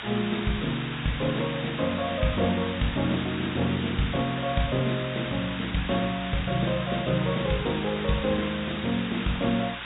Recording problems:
treble cut off; nothing above 4 kHz
electrical hum; 60 Hz, harmonics up to 840 Hz, SNR 21 dB
background hiss; SNR 7 dB

